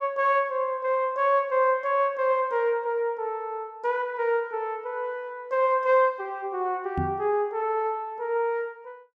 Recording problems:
microphone thump; at 7 s; peak -1 dB vs average level

